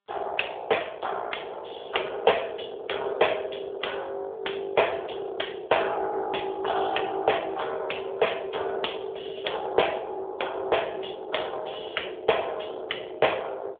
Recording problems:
phone line; 340 Hz to 3.5 kHz, AMR-NB

